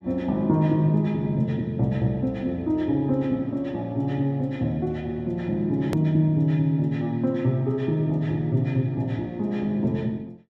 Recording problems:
edit click; at 6 s

